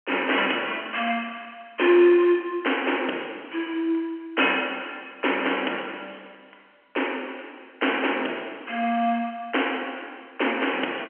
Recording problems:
telephone audio; 280 Hz to 3.2 kHz, G.711

